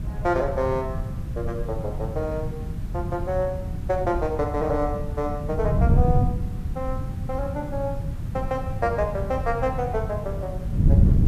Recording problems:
hiss; SNR 23 dB
wind noise; below 150 Hz, SNR 0 dB

